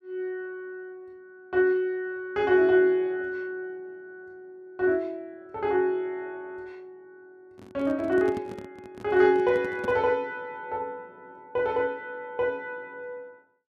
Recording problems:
handling noise; from 7.5 to 10 s; peak -5 dB vs average level

